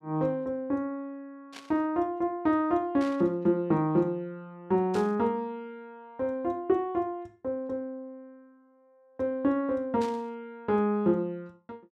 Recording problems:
burst of static; 4 times, first at 1.5 s; peak -11 dB vs average level

